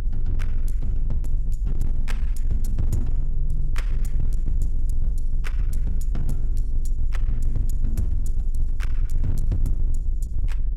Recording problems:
distorted audio; hard clipping, uneven, signal-to-distortion ratio 10 dB
hum; 50 Hz, harmonics up to 550 Hz, SNR 16 dB
low-frequency rumble; below 42 Hz, strongest tone 22 Hz, SNR -5 dB

